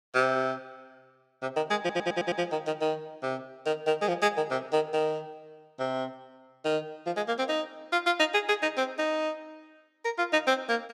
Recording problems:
stutter; at 2 s

